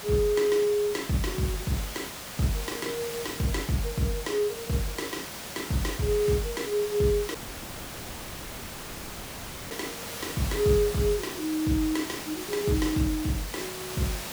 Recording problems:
hiss; slope -2 dB per octave, SNR 8 dB
audio cutting out; at 7.5 s for 2.5 s

